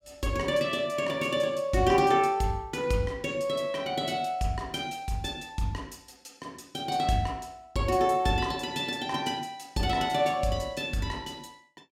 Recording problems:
none

